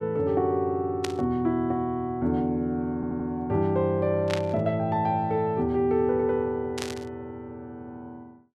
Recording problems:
static burst; at 1 s, at 4.5 s and at 7 s; peak -1 dB vs average level
audio stuttering; at 3 s

